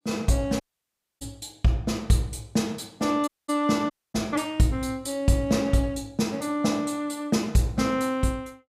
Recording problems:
audio cutting out; at 0.5 s for 0.5 s, at 3.5 s and at 4 s

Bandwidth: 15.5 kHz